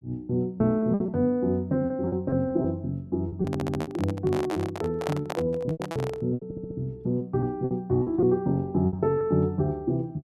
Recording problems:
lost packets; 10% of the sound replaced, filled with repeated pitch periods
handling noise; from 3.5 to 6 s; peak -1 dB vs average level
audio stuttering; at 3.5 s and at 6.5 s

